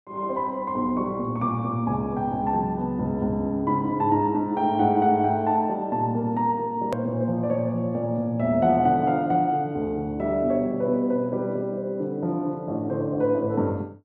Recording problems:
click at an edit; at 7 s

